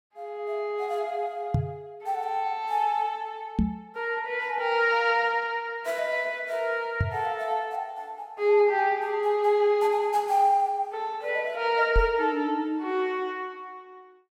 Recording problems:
microphone bump; 4 times, first at 1.5 s; peak +5 dB vs average level

